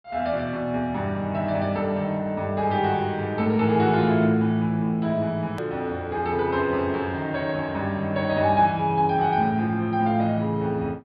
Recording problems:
low-pass filter; nothing above 5 kHz
edit click; at 5.5 s

